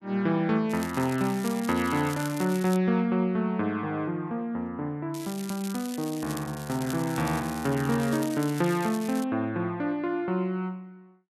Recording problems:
crackle; from 0.5 to 3 s and from 5 to 9 s; loose cable, SNR 14 dB

